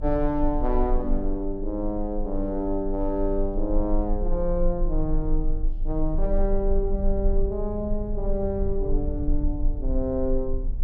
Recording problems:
low-frequency rumble; below 34 Hz, strongest tone 26 Hz, SNR 2 dB

